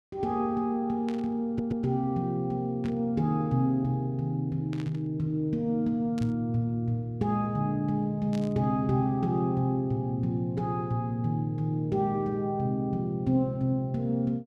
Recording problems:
burst of static; 5 times, first at 1 s; peak -12 dB vs average level
audio stuttering; at 1.5 s

